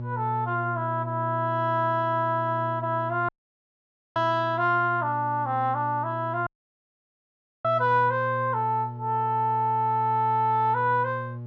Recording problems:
hum; 60 Hz, harmonics up to 840 Hz, SNR 11 dB
audio cutting out; at 3.5 s for 1 s and at 6.5 s for 1 s

